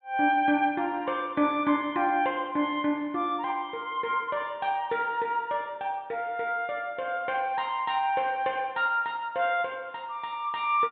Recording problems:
treble missing; nothing above 4 kHz

